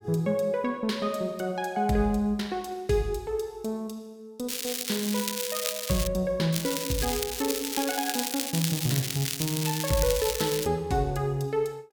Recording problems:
crackle; from 4.5 to 6 s and from 6.5 to 11 s; loose cable, SNR 2 dB

